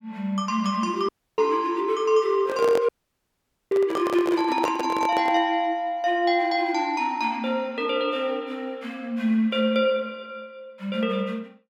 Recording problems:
audio cutting out; at 1 s and at 3 s for 1 s
microphone handling noise; from 2.5 to 5.5 s; peak +1 dB vs average level

